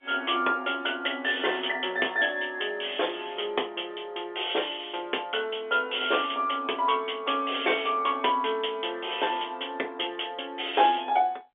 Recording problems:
phone line; 300 Hz to 3.6 kHz, G.711

